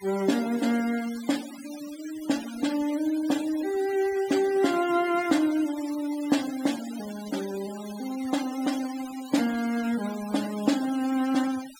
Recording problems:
denoising artefacts; signal-to-artefact ratio 14 dB

